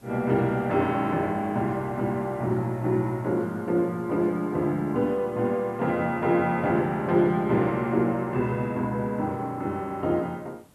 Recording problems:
background hiss; slope -5 dB per octave, SNR 30 dB

